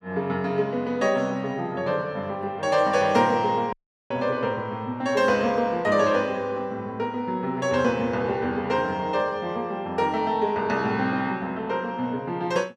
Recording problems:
dropout; at 3.5 s

